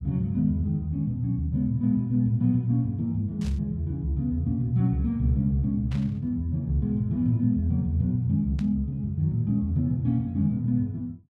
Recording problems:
static burst; at 3.5 s, at 6 s and at 8.5 s; peak -15 dB vs average level

